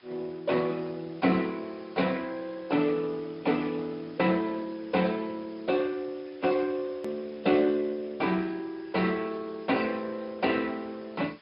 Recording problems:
low-pass filter; nothing above 4.5 kHz
codec artefacts; Opus, then Speex, log-spectral distance 11 dB
background hiss; SNR 26 dB
edit click; at 7 s

